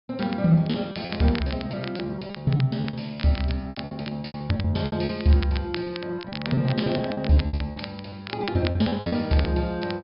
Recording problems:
treble cut off; nothing above 5.5 kHz
crackle; vinyl, SNR 14 dB
lost packets; 18% of the sound replaced, filled with repeated pitch periods

